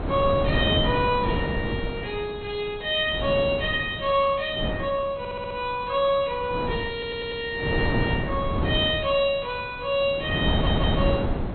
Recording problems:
lossy codec; MP2, log-spectral distance 3 dB, nothing above 3.8 kHz
wind on the microphone; below 410 Hz, SNR 3 dB
audio stuttering; at 5 s, at 7 s and at 11 s

